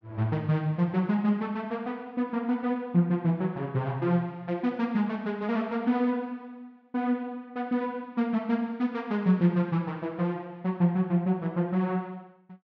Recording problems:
low-pass filter; nothing above 7.8 kHz

